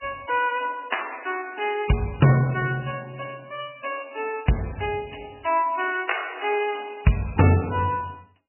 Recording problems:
lossy compression; MP3, log-spectral distance 10 dB, nothing above 2.9 kHz

